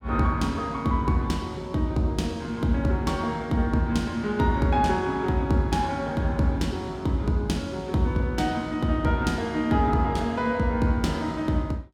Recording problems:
none

